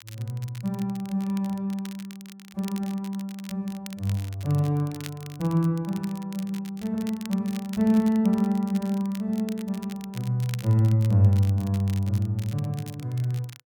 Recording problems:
crackle; vinyl, SNR 20 dB

